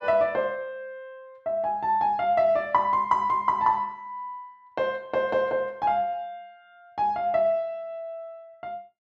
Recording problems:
none

